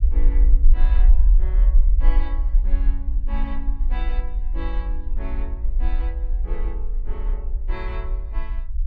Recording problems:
low-frequency rumble; below 44 Hz, SNR -15 dB

